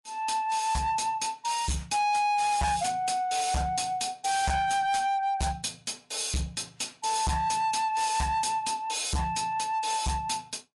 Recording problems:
codec artefacts; MP3, log-spectral distance 5 dB, nothing above 11.3 kHz
distortion; hard clipping, signal-to-distortion ratio 7 dB

